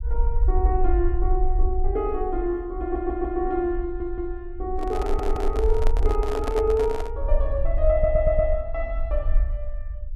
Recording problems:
rumble; below 52 Hz, SNR 1 dB
stutter; 4 times, first at 3 s
handling noise; from 5 to 7 s; peak -1 dB vs average level

